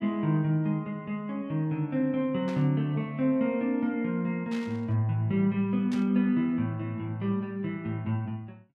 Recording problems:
static burst; at 2.5 s, at 4.5 s and at 6 s; peak -11 dB vs average level

